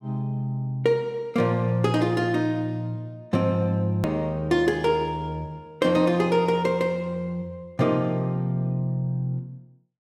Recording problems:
hard cut with a click; at 4 s

